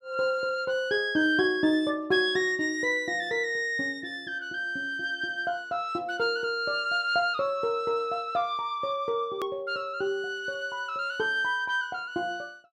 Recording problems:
hard cut with a click; at 9.5 s

